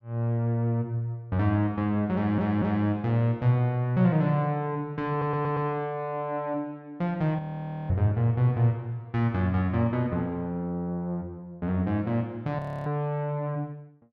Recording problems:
audio stuttering; at 2 s and at 5 s
audio freezing; at 7.5 s for 0.5 s and at 13 s

